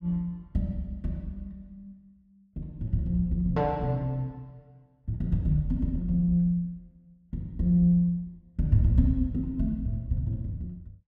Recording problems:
none

